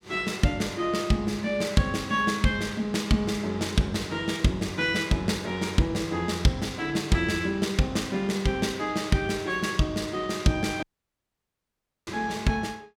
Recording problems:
dropout; at 11 s for 1 s

